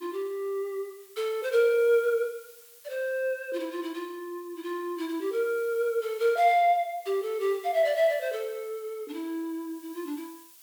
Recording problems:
background hiss; slope +3 dB per octave, SNR 23 dB

